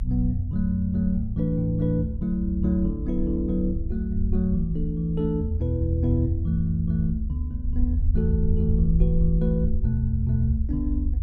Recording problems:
rumble; below 72 Hz, SNR 4 dB

